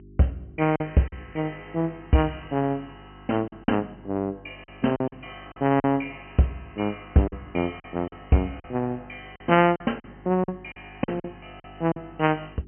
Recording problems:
treble cut off; nothing above 3.1 kHz
hum; 50 Hz, harmonics up to 400 Hz, SNR 23 dB
lost packets; 8% of the sound replaced, filled with silence

